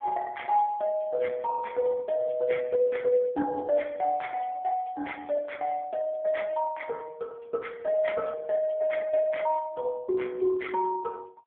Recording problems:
phone line; 300 Hz to 3.4 kHz, AMR-NB

